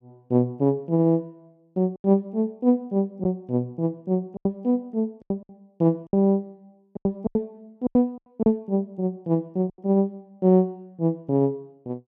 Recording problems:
packet loss; 8% of the sound replaced, filled with silence

